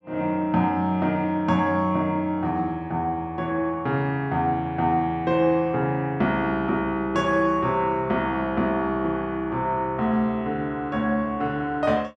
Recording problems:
none

